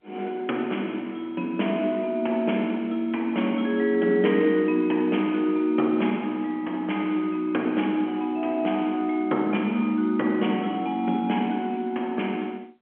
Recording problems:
phone line; 190 Hz to 3.3 kHz, G.711

